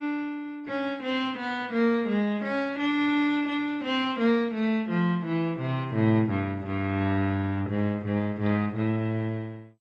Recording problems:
lossy compression; AAC, then MP2, log-spectral distance 2 dB

